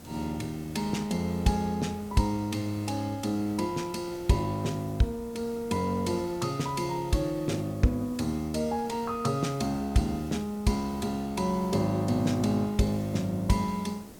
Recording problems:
hiss; SNR 18 dB

